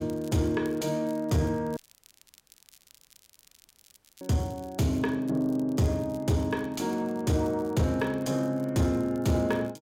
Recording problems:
distortion; soft clipping, signal-to-distortion ratio 11 dB
crackling; vinyl, SNR 27 dB
audio cutting out; at 2 s for 2.5 s

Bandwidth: 16 kHz